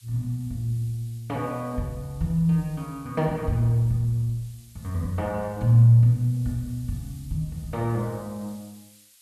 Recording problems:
background hiss; slope +6 dB per octave, SNR 27 dB

